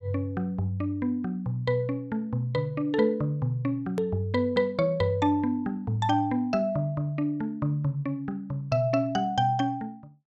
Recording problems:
click at an edit; at 4 s

